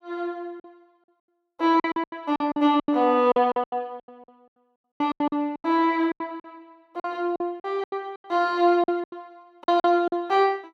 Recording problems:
packet loss; 18% of the sound replaced, filled with silence

